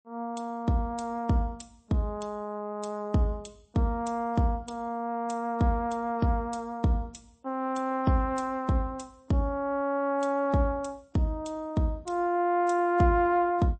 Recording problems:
lossy compression; MP3, log-spectral distance 2 dB, nothing above 8.2 kHz

